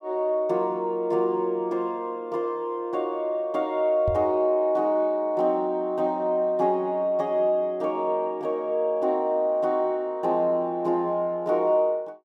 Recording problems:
microphone bump; at 4 s; peak -2 dB vs average level

